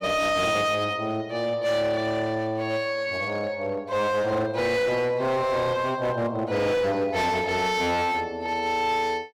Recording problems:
distortion; hard clipping, uneven, signal-to-distortion ratio 11 dB

